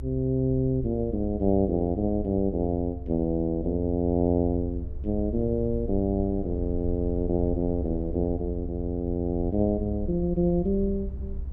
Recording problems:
rumble; below 68 Hz, strongest tone 66 Hz, SNR 9 dB

